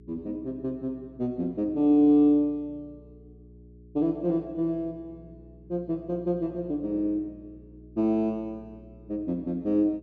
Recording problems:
hum; 60 Hz, harmonics up to 420 Hz, SNR 24 dB

